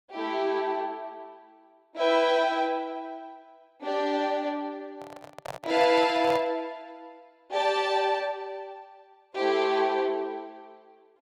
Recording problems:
handling noise; from 5 to 6.5 s; peak -4 dB vs average level

